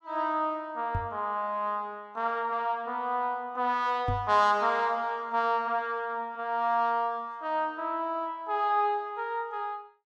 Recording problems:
microphone bump; at 1 s and at 4 s; peak 0 dB vs average level

